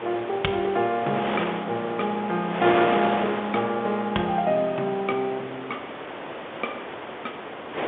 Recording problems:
telephone audio; 190 Hz to 3.6 kHz, G.711
wind on the microphone; below 1.8 kHz, SNR 6 dB

